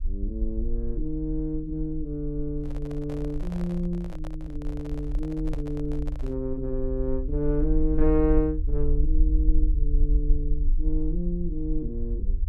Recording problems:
rumble; below 46 Hz, strongest tone 22 Hz, SNR 0 dB
handling noise; from 2.5 to 6.5 s; peak -5 dB vs average level

